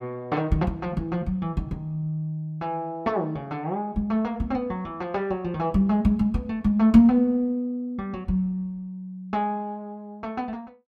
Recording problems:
none

